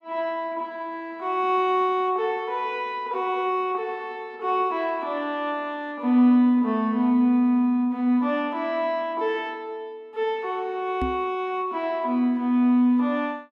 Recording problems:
knock on the microphone; at 11 s; peak -2 dB vs average level

